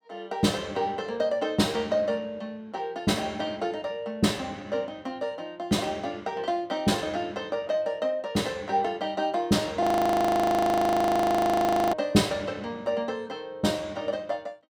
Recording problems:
frozen audio; at 10 s for 2 s

